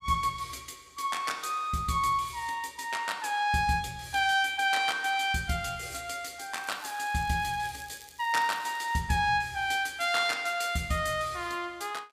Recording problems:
crackling; from 6.5 to 9 s; loose cable, SNR 22 dB

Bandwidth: 15 kHz